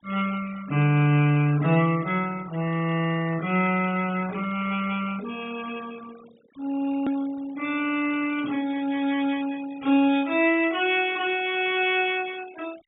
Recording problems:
treble missing; nothing above 4 kHz
noise reduction artefacts; signal-to-artefact ratio 19 dB
hard cut with a click; at 7 s

